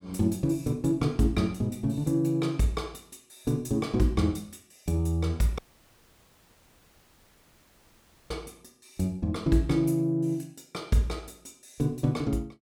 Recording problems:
dropout; at 5.5 s for 2.5 s

